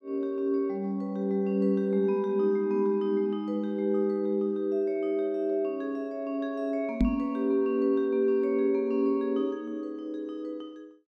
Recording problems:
knock on the microphone; at 7 s; peak +7 dB vs average level

